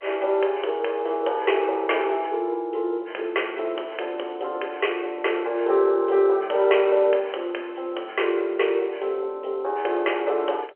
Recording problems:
telephone audio; 340 Hz to 3.2 kHz, G.711

